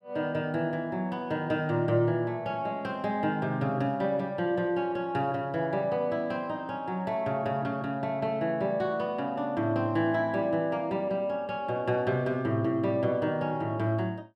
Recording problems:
none

